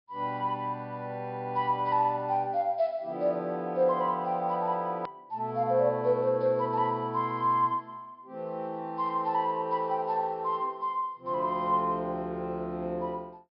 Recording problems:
treble cut off; nothing above 5.5 kHz
hard cut with a click; at 5 s

